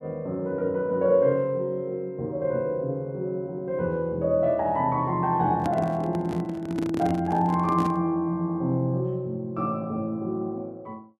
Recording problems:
microphone handling noise; from 5.5 to 8 s; peak -1 dB vs average level

